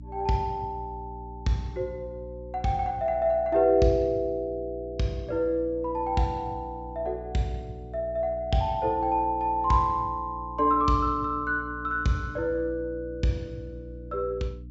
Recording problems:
treble missing; nothing above 8 kHz
hum; 60 Hz, harmonics up to 300 Hz, SNR 15 dB

